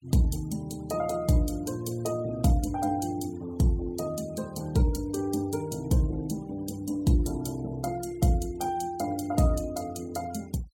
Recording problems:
denoising artefacts; signal-to-artefact ratio 22 dB

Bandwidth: 17 kHz